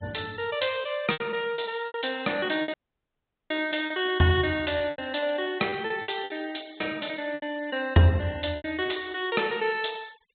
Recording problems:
low-pass filter; nothing above 4 kHz
denoising artefacts; signal-to-artefact ratio 23 dB
lost packets; 10% of the sound replaced, filled with repeated pitch periods
dropout; at 2.5 s for 1 s

